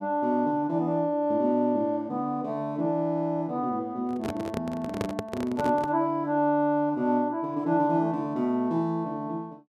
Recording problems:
microphone handling noise; from 4 to 6 s; peak 0 dB vs average level

